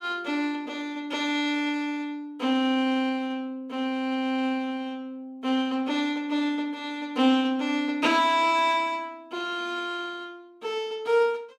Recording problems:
none

